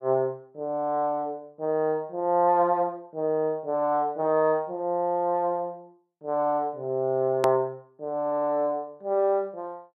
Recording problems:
click at an edit; at 7.5 s

